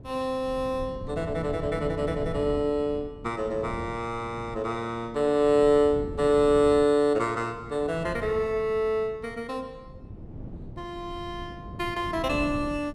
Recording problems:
wind on the microphone; below 230 Hz, SNR 14 dB

